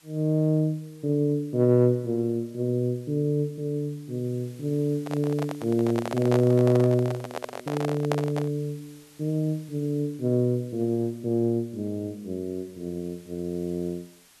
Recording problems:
hiss; slope +1 dB per octave, SNR 27 dB
microphone handling noise; from 5 to 8.5 s; peak +2 dB vs average level

